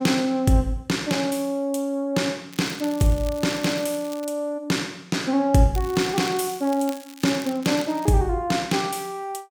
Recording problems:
crackling; from 2.5 to 4.5 s and from 6 to 8 s; loose cable, SNR 18 dB

